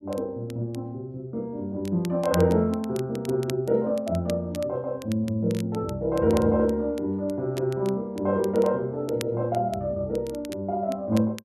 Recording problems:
crackling; vinyl, SNR 19 dB

